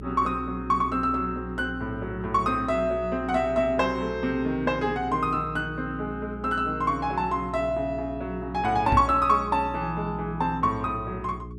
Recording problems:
hum; 60 Hz, harmonics up to 420 Hz, SNR 13 dB
microphone bump; at 9 s; peak +3 dB vs average level

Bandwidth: 13 kHz